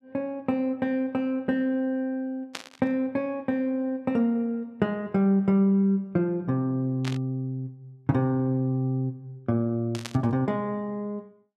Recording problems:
burst of static; at 2.5 s, at 7 s and at 10 s; peak -3 dB vs average level

